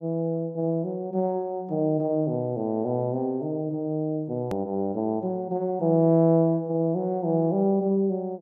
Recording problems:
hard cut with a click; at 4.5 s

